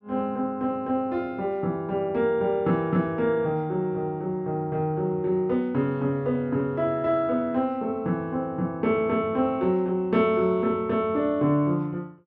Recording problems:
none

